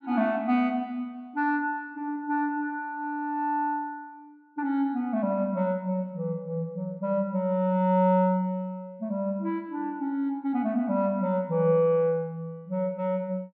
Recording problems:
none

